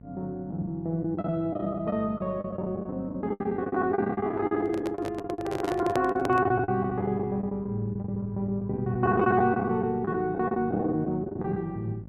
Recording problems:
electrical hum; 50 Hz, harmonics up to 600 Hz, SNR 18 dB
packet loss; 16% of the sound replaced, filled with the last packet
microphone handling noise; from 4.5 to 6.5 s; peak +2 dB vs average level

